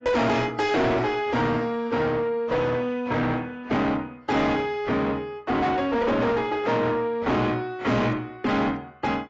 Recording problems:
lossy compression; AAC, log-spectral distance 2 dB, nothing above 7.3 kHz
distorted audio; soft clipping, signal-to-distortion ratio 7 dB

